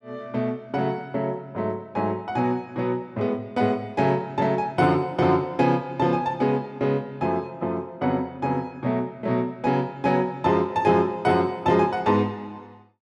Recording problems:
none

